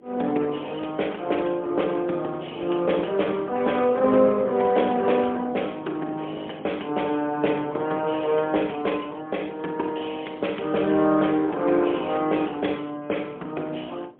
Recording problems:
phone line; 260 Hz to 3.4 kHz, AMR-NB, then MP3
wind noise; below 470 Hz, SNR 21 dB

